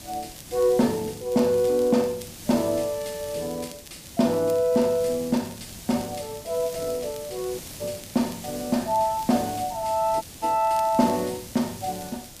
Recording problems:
background hiss; SNR 14 dB
crackle; vinyl, SNR 23 dB
audio cutting out; at 7.5 s and at 10 s

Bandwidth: 15 kHz